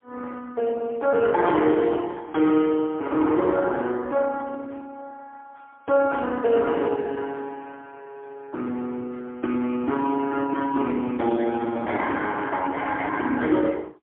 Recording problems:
telephone audio; 260 Hz to 3.3 kHz, AMR-NB, then MP3

